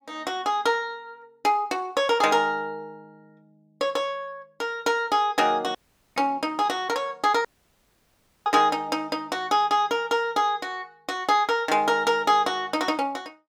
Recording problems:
dropout; at 6 s and at 7.5 s for 1 s

